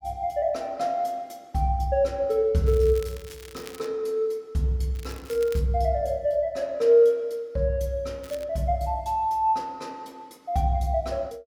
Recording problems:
crackle; from 2.5 to 4 s, at 5 s and at 8 s; loose cable, SNR 21 dB

